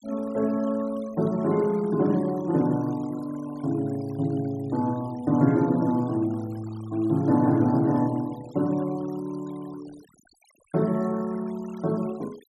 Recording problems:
noise reduction artefacts; signal-to-artefact ratio 24 dB

